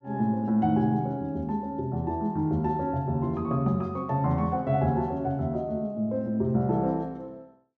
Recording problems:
none

